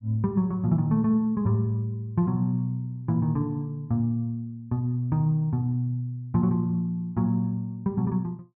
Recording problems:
none

